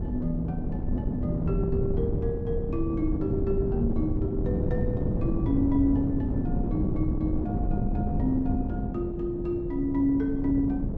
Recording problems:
wind on the microphone; below 220 Hz, SNR 0 dB

